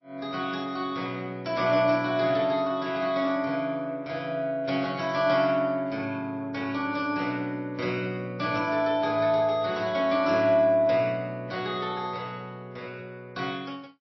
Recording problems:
codec artefacts; MP3, log-spectral distance 2 dB, nothing above 5.7 kHz

